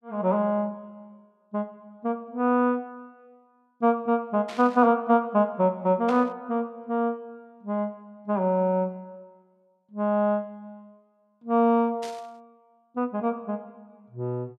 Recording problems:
burst of static; at 4.5 s, at 6 s and at 12 s; peak -10 dB vs average level

